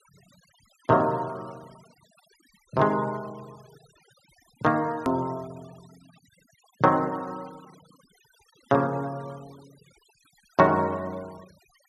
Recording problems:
noise reduction artefacts; signal-to-artefact ratio 27 dB
hard cut with a click; at 5 s

